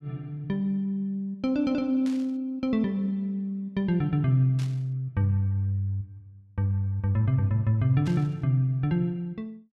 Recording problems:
static burst; at 2 s, at 4.5 s and at 8 s; peak -13 dB vs average level

